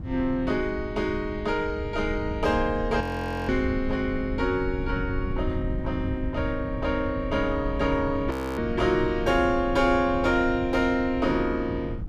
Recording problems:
wind noise; below 120 Hz, SNR 8 dB
frozen audio; at 3 s and at 8.5 s

